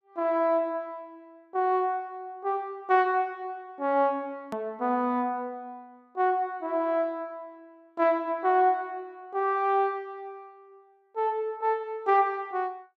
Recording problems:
edit click; at 4.5 s

